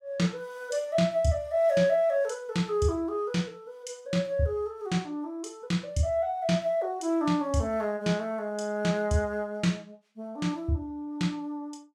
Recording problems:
none

